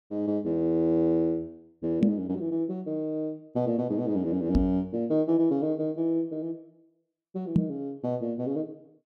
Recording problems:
microphone thump; at 2 s, at 4.5 s and at 7.5 s; peak +9 dB vs average level

